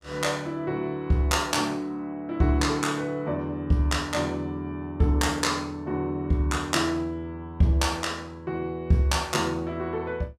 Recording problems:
none

